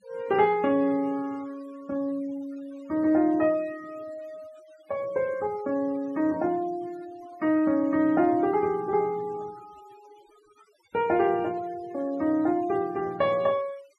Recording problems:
noise reduction artefacts; signal-to-artefact ratio 25 dB

